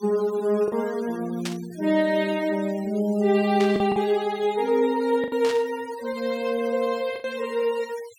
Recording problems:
noise reduction artefacts; signal-to-artefact ratio 21 dB
packet loss; 3% of the sound replaced, filled with the last packet
burst of static; at 1.5 s, at 3.5 s and at 5.5 s; peak -3 dB vs average level

